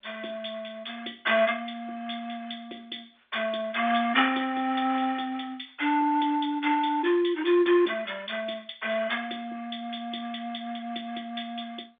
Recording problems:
telephone audio; 300 Hz to 3.6 kHz, G.711

